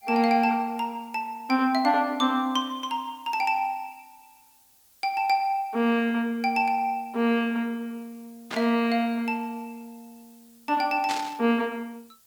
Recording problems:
hiss; slope +1 dB per octave, SNR 30 dB
static burst; at 8.5 s and at 11 s; peak -2 dB vs average level

